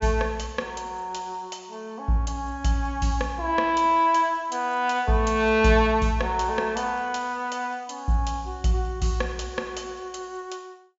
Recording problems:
low-pass filter; nothing above 7.5 kHz

